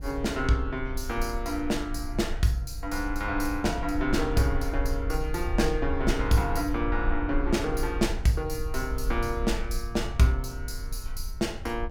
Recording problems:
wind noise; below 58 Hz, SNR 6 dB

